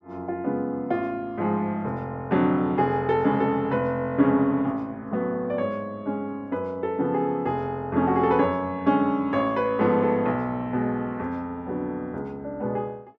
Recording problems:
none

